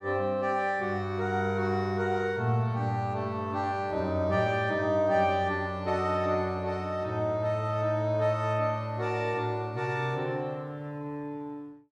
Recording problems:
none

